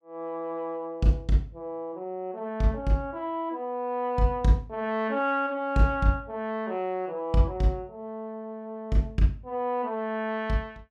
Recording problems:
none

